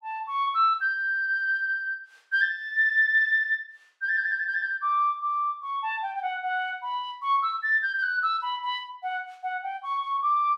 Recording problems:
none

